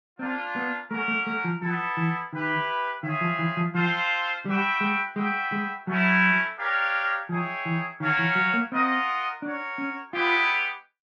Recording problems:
none

